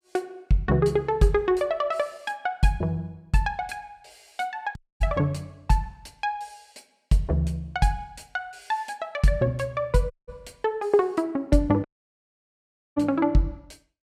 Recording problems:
audio cutting out; at 5 s, at 10 s and at 12 s for 1 s

